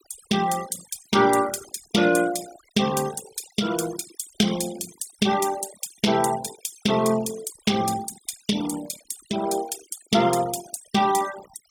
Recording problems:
denoising artefacts; signal-to-artefact ratio 13 dB

